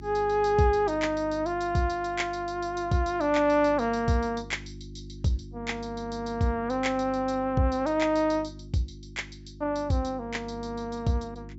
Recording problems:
treble missing; nothing above 8 kHz
hum; 50 Hz, harmonics up to 350 Hz, SNR 17 dB

